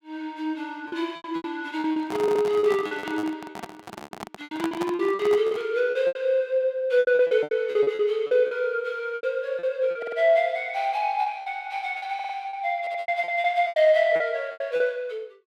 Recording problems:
packet loss; 14% of the sound replaced, filled with repeated pitch periods
microphone handling noise; from 2 to 5.5 s; peak -3 dB vs average level
stutter; 4 times, first at 2 s

